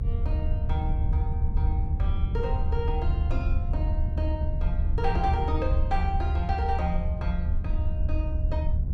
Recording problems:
low-frequency rumble; below 76 Hz, SNR -6 dB

